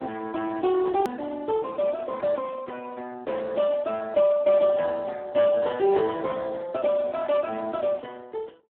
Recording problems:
phone line; 240 Hz to 2.3 kHz, Speex
hard cut with a click; at 1 s

